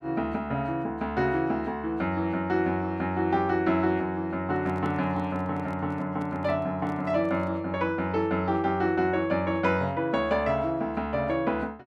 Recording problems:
microphone handling noise; from 4.5 to 7.5 s; peak -9 dB vs average level

